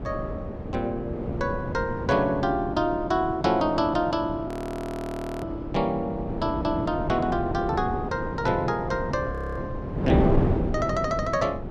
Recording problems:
wind on the microphone; below 370 Hz, SNR 5 dB
frozen audio; at 4.5 s for 1 s and at 9.5 s

